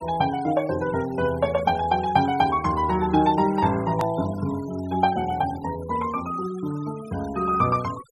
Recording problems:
denoising artefacts; signal-to-artefact ratio 20 dB
edit click; at 4 s

